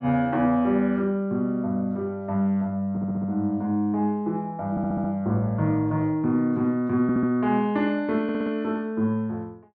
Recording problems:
audio stuttering; 4 times, first at 3 s

